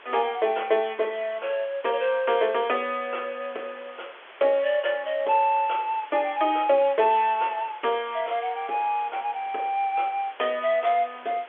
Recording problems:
telephone audio; 340 Hz to 3.5 kHz, G.711
background hiss; SNR 20 dB

